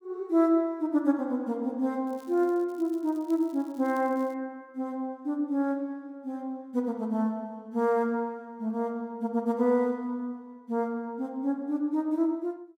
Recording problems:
crackling; from 2 to 4.5 s; loose cable, SNR 29 dB

